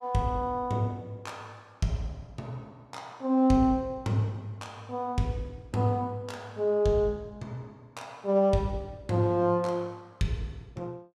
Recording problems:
none

